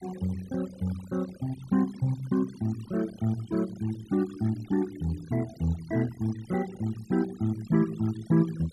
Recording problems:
denoising artefacts; signal-to-artefact ratio 19 dB

